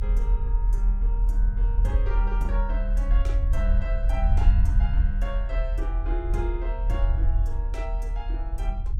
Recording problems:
hum; 50 Hz, harmonics up to 850 Hz, SNR 19 dB
rumble; below 50 Hz, strongest tone 40 Hz, SNR -11 dB

